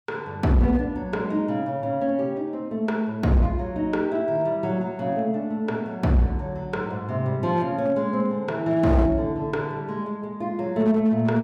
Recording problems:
distortion; hard clipping, uneven, signal-to-distortion ratio 12 dB

